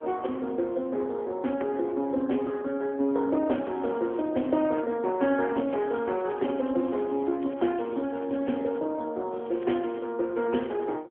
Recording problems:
phone line; 240 Hz to 3.6 kHz, AMR-NB
crackle; from 3.5 to 5 s, from 5.5 to 9 s and at 9.5 s; loose cable, SNR 27 dB

